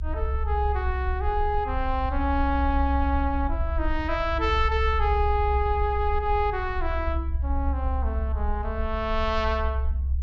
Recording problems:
low-pass filter; nothing above 8 kHz
low-frequency rumble; below 68 Hz, strongest tone 66 Hz, SNR 2 dB

